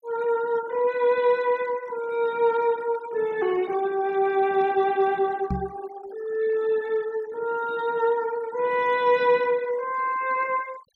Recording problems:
noise reduction artefacts; signal-to-artefact ratio 22 dB
microphone thump; at 5.5 s; peak 0 dB vs average level

